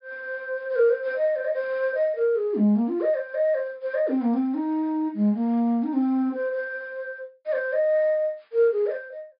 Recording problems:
treble missing; nothing above 5.1 kHz

